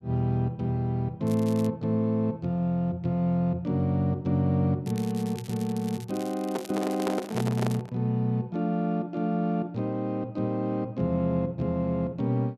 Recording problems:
crackling; at 1.5 s and from 5 to 8 s; loose cable, SNR 19 dB
microphone handling noise; from 6.5 to 8 s; peak 0 dB vs average level

